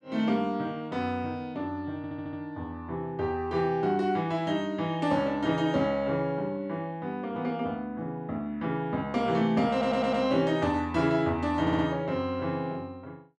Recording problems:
audio stuttering; at 2 s, at 9.5 s and at 12 s

